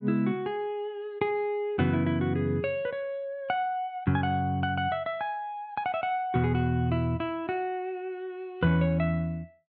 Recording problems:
treble missing; nothing above 6.5 kHz

